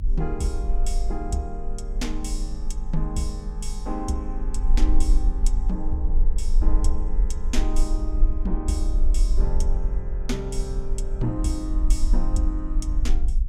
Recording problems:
electrical hum; 50 Hz, harmonics up to 500 Hz, SNR 16 dB
low-frequency rumble; below 42 Hz, strongest tone 18 Hz, SNR -5 dB

